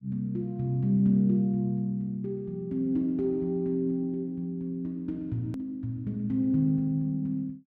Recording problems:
hard cut with a click; at 5.5 s

